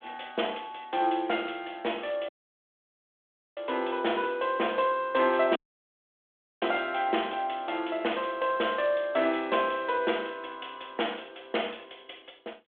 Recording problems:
phone line; 240 Hz to 3.5 kHz, G.726
dropout; at 2.5 s for 1.5 s and at 5.5 s for 1 s

